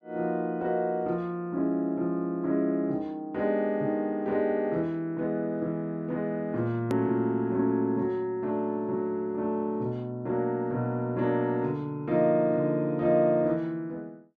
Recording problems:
click at an edit; at 7 s

